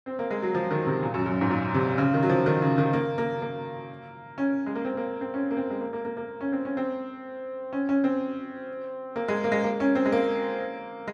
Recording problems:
none

